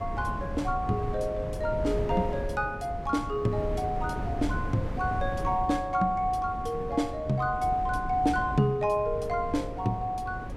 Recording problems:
wind on the microphone; below 230 Hz, SNR 7 dB

